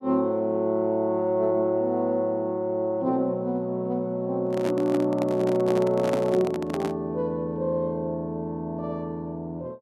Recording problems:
handling noise; from 4.5 to 7 s; peak 0 dB vs average level

